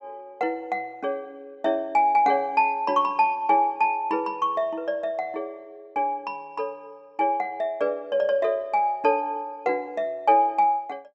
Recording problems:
treble missing; nothing above 7.9 kHz

